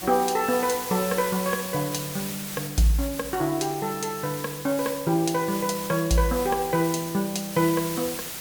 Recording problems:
background hiss; slope -1 dB per octave, SNR 8 dB

